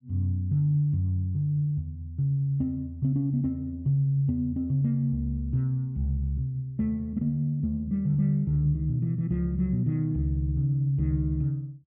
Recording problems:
none

